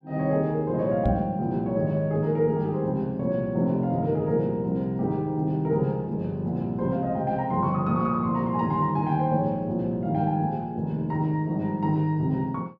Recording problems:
knock on the microphone; at 1 s; peak +1 dB vs average level

